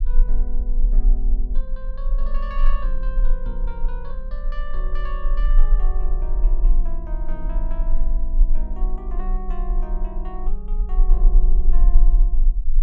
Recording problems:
low-frequency rumble; below 34 Hz, strongest tone 18 Hz, SNR -14 dB
microphone thump; at 3.5 s; peak +3 dB vs average level

